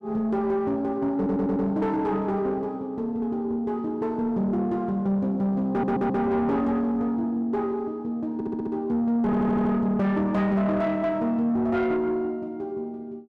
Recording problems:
distorted audio; soft clipping, signal-to-distortion ratio 11 dB
audio stuttering; 4 times, first at 1 s

